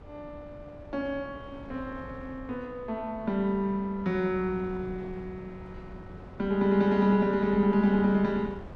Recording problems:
wind noise; below 420 Hz, SNR 18 dB

